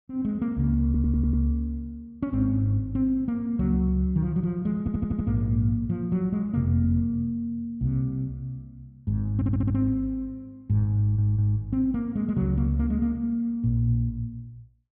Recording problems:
audio stuttering; 4 times, first at 1 s

